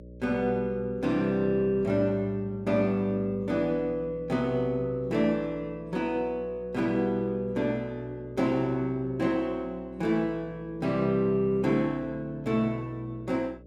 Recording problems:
hum; 60 Hz, harmonics up to 600 Hz, SNR 20 dB

